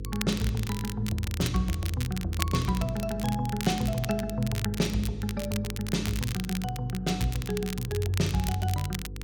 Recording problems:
hum; 50 Hz, harmonics up to 500 Hz, SNR 10 dB
crackle; vinyl, SNR 9 dB

